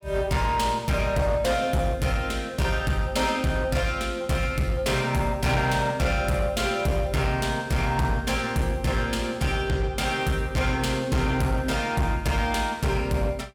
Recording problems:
distortion; hard clipping, uneven, signal-to-distortion ratio 12 dB

